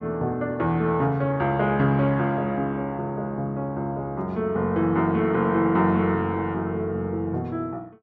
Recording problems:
none

